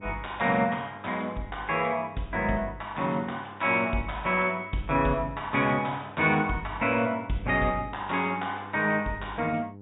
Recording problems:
low-pass filter; nothing above 4 kHz
electrical hum; 50 Hz, harmonics up to 900 Hz, SNR 21 dB

